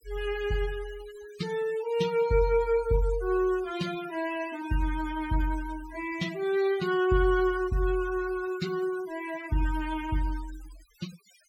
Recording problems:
noise reduction artefacts; signal-to-artefact ratio 16 dB

